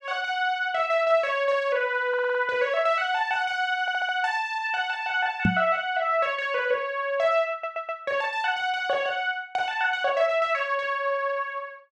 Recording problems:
stutter; at 2 s, at 4 s and at 7.5 s
microphone bump; at 5.5 s; peak +6 dB vs average level

